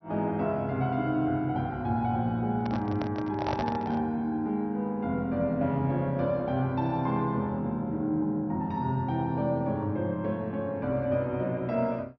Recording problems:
low-pass filter; nothing above 5.9 kHz
microphone handling noise; from 2.5 to 4 s; peak -1 dB vs average level

